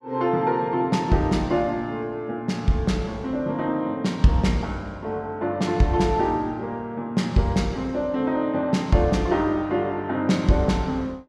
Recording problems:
none

